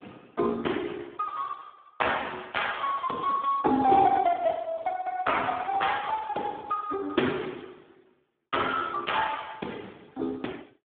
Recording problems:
phone line; 220 Hz to 3.5 kHz, Speex

